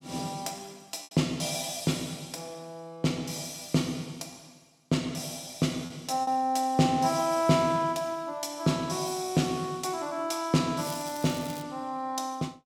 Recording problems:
lost packets; 1.4% of the sound replaced, filled with repeated pitch periods
crackling; at 11 s; loose cable, SNR 15 dB

